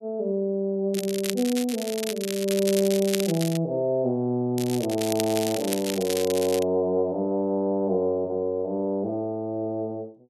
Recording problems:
crackling; from 1 to 3.5 s and from 4.5 to 6.5 s; loose cable, SNR 8 dB

